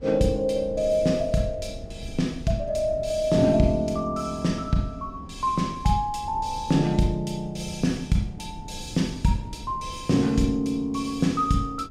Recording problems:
low-frequency rumble; below 160 Hz, SNR 17 dB

